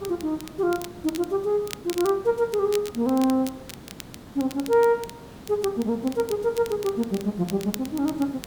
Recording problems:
background hiss; slope -6 dB per octave, SNR 18 dB
crackling; vinyl, SNR 16 dB

